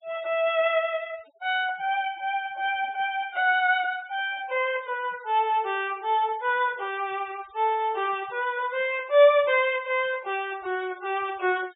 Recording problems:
low-pass filter; nothing above 4 kHz
noise reduction artefacts; signal-to-artefact ratio 25 dB

